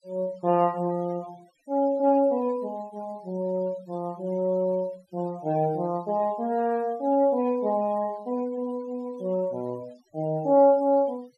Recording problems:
noise reduction artefacts; signal-to-artefact ratio 26 dB

